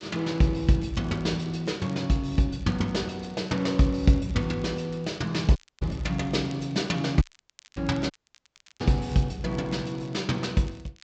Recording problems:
low-pass filter; nothing above 8 kHz
crackle; vinyl, SNR 28 dB
dropout; at 5.5 s, at 7 s for 0.5 s and at 8 s for 0.5 s

